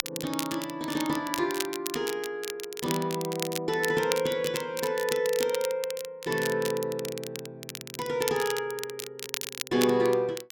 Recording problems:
crackling; vinyl, SNR 7 dB

